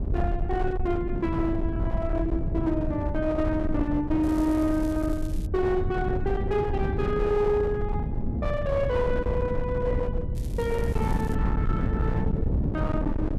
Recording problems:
distorted audio; hard clipping, uneven, signal-to-distortion ratio 11 dB
rumble; below 84 Hz, SNR 7 dB
wind on the microphone; below 210 Hz, SNR 3 dB
crackle; from 4 to 5.5 s and from 10 to 11 s; loose cable, SNR 23 dB

